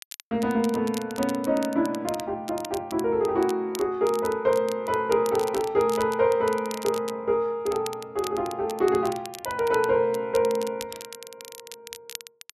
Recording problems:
crackle; vinyl, SNR 16 dB

